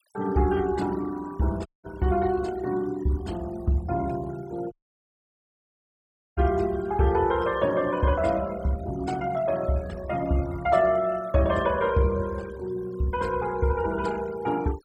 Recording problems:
noise reduction artefacts; signal-to-artefact ratio 21 dB
audio cutting out; at 1.5 s and at 4.5 s for 1.5 s

